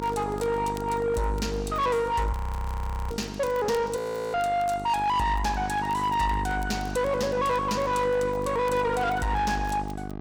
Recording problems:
distortion; soft clipping, signal-to-distortion ratio 11 dB
hum; 50 Hz, harmonics up to 1.3 kHz, SNR 8 dB
crackling; vinyl, SNR 26 dB
audio freezing; at 2.5 s for 1 s and at 4 s

